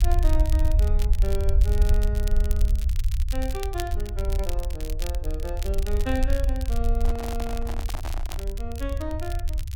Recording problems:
rumble; below 62 Hz, SNR -8 dB
crackling; vinyl, SNR 8 dB
handling noise; from 7 to 8.5 s; peak +2 dB vs average level

